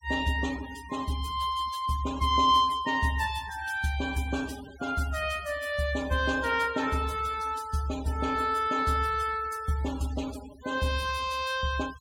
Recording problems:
denoising artefacts; signal-to-artefact ratio 18 dB

